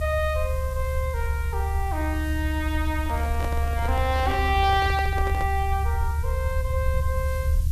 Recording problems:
hiss; slope +5 dB per octave, SNR 18 dB
rumble; below 74 Hz, strongest tone 72 Hz, SNR -1 dB
handling noise; from 3 to 5.5 s; peak -4 dB vs average level

